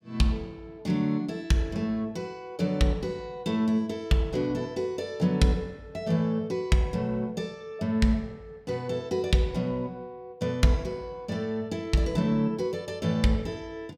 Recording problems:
none

